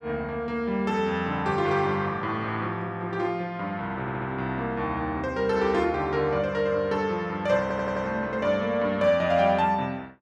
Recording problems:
audio stuttering; at 4 s and at 7.5 s

